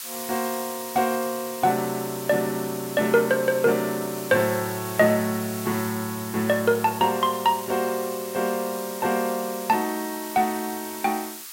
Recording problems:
background hiss; SNR 11 dB

